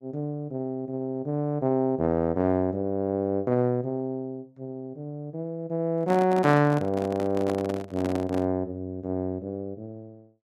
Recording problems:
handling noise; from 6 to 8.5 s; peak -3 dB vs average level

